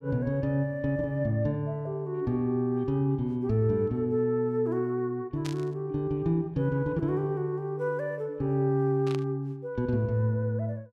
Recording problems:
burst of static; at 5.5 s and at 9 s; peak -7 dB vs average level

